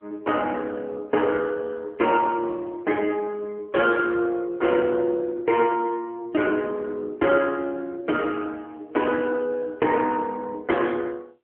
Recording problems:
telephone audio; 280 Hz to 3.3 kHz, AMR-NB

